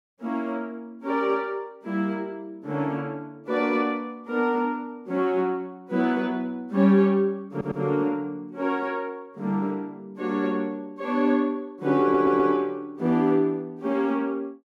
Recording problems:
stutter; at 7.5 s and at 12 s

